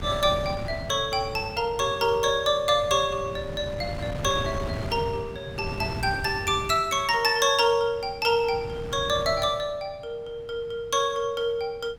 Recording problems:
wind on the microphone; below 340 Hz, SNR 11 dB

